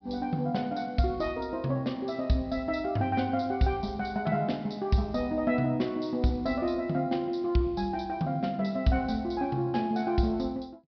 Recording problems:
treble missing; nothing above 5.5 kHz

